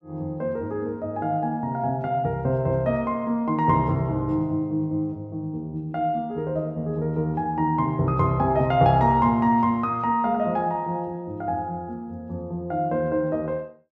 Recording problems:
none

